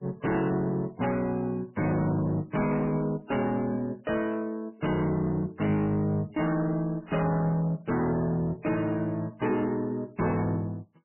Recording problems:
codec artefacts; MP3, log-spectral distance 3 dB, nothing above 2.9 kHz
distortion; soft clipping, signal-to-distortion ratio 10 dB

